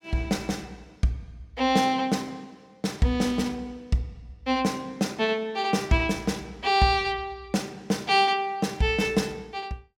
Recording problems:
none

